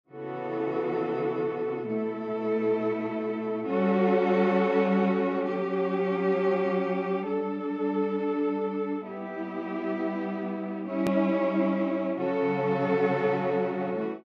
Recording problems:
click at an edit; at 11 s

